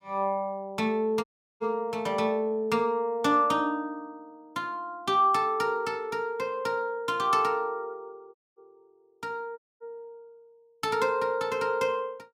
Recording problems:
audio cutting out; at 1 s, at 8.5 s and at 9.5 s

